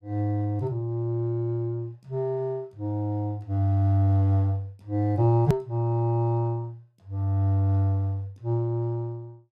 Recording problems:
click at an edit; at 5.5 s

